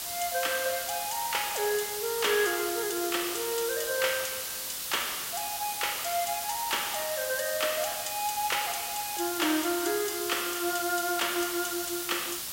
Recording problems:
hiss; slope +2 dB per octave, SNR 2 dB

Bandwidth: 16 kHz